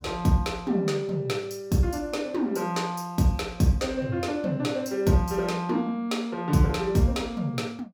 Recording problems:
none

